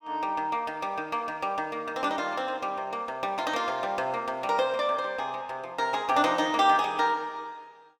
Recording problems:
none

